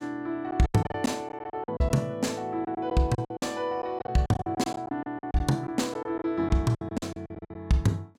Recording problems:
packet loss; 15% of the sound replaced, filled with silence

